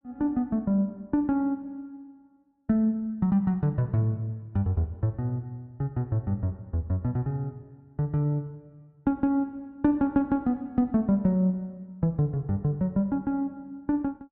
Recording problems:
none

